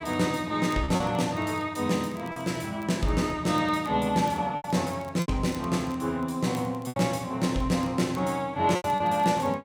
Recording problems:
crackle; vinyl, SNR 27 dB
packet loss; 5% of the sound replaced, filled with repeated pitch periods

